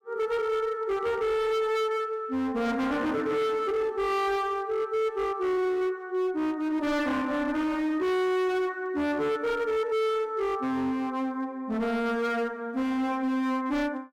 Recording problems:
distortion; hard clipping, signal-to-distortion ratio 8 dB

